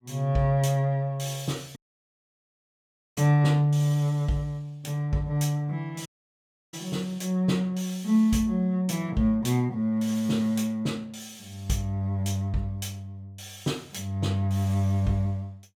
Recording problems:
audio cutting out; at 2 s for 1.5 s and at 6 s for 0.5 s

